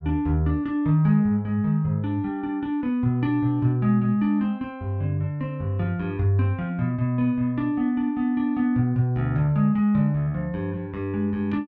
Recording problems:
none

